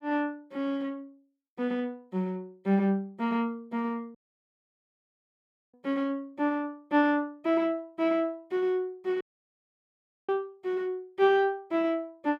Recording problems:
audio cutting out; at 4 s for 1.5 s and at 9 s for 1 s

